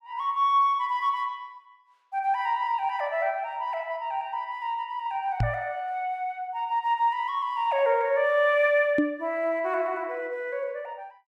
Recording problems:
microphone thump; at 5.5 s and at 9 s; peak +6 dB vs average level

